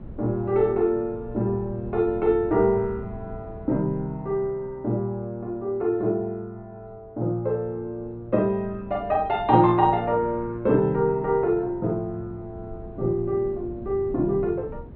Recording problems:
treble missing; nothing above 4.4 kHz
wind on the microphone; below 240 Hz, SNR 17 dB

